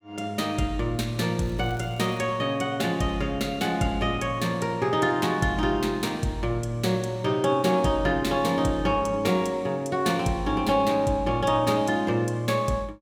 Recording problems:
crackling; at 1.5 s; loose cable, SNR 29 dB

